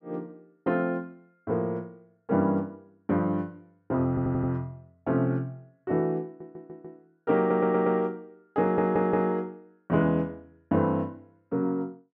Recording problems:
stutter; 4 times, first at 4 s

